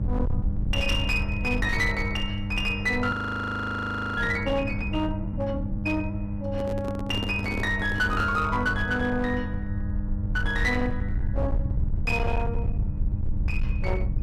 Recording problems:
distortion; hard clipping, signal-to-distortion ratio 12 dB
hum; 50 Hz, harmonics up to 800 Hz, SNR 7 dB
low-frequency rumble; below 88 Hz, SNR 4 dB
frozen audio; at 3 s for 1 s
handling noise; from 6.5 to 8.5 s; peak -2 dB vs average level

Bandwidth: 14.5 kHz